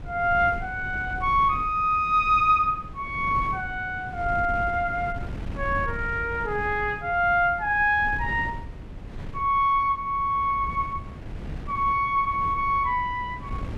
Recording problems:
wind noise; below 180 Hz, SNR 14 dB

